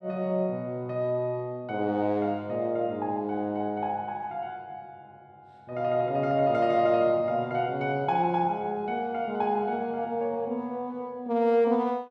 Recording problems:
none

